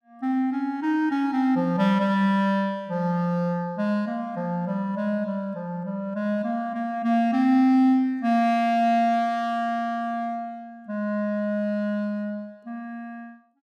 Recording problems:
none

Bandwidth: 14 kHz